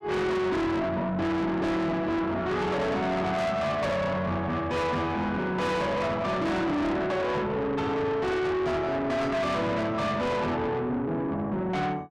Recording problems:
distortion; soft clipping, signal-to-distortion ratio 6 dB

